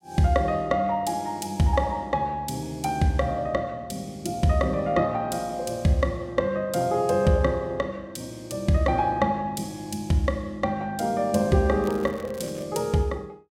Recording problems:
crackle; at 12 s; loose cable, SNR 23 dB

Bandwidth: 16 kHz